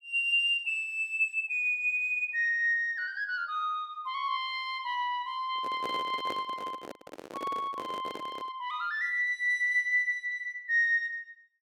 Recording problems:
microphone handling noise; from 5.5 to 8.5 s; peak -6 dB vs average level

